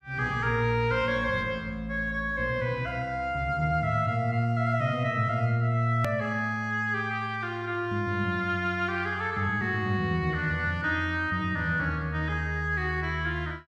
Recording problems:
click at an edit; at 6 s

